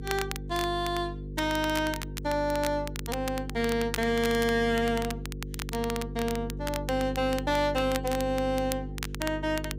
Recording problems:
distorted audio; hard clipping, signal-to-distortion ratio 10 dB
hum; 50 Hz, harmonics up to 500 Hz, SNR 9 dB
crackle; vinyl, SNR 11 dB

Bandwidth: 15.5 kHz